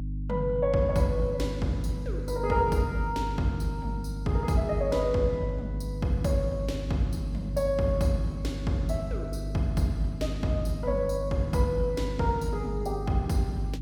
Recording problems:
electrical hum; 50 Hz, harmonics up to 300 Hz, SNR 5 dB

